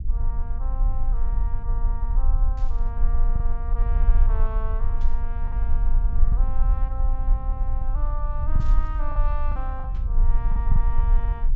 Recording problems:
treble missing; nothing above 8 kHz
rumble; below 42 Hz, strongest tone 20 Hz, SNR -13 dB
lost packets; 3% of the sound replaced, filled with the last packet
static burst; 4 times, first at 2.5 s; peak -9 dB vs average level

